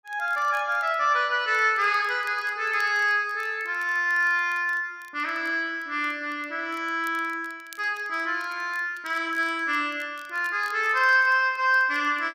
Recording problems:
crackle; vinyl, SNR 28 dB

